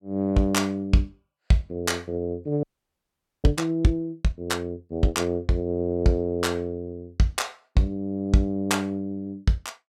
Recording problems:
frozen audio; at 2.5 s for 1 s

